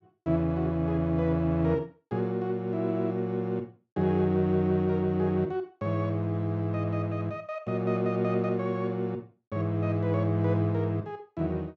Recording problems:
none

